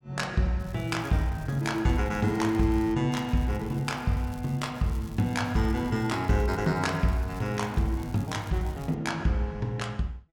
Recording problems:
crackle; from 0.5 to 3 s and from 3 to 9 s; loose cable, SNR 25 dB

